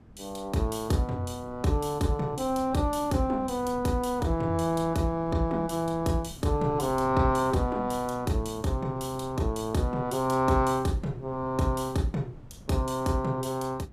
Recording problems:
wind noise; below 230 Hz, SNR 19 dB

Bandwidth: 15 kHz